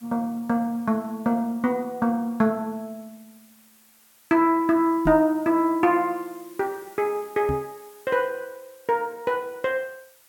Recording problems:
hiss; slope 0 dB per octave, SNR 27 dB
knock on the microphone; at 5 s and at 7.5 s; peak -1 dB vs average level

